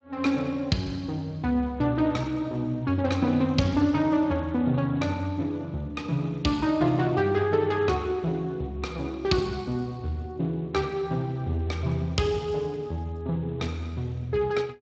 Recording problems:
lossy compression; Speex, log-spectral distance 3 dB

